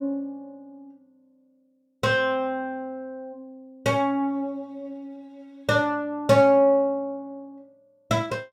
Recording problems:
none

